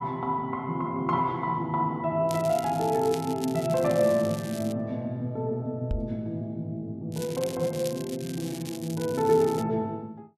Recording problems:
crackling; from 2.5 to 4.5 s and from 7 to 9.5 s; loose cable, SNR 15 dB
knock on the microphone; at 6 s; peak +1 dB vs average level

